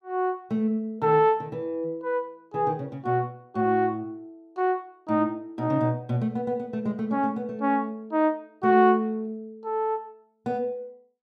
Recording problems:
none

